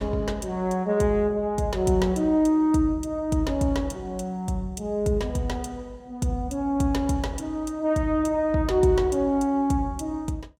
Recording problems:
none

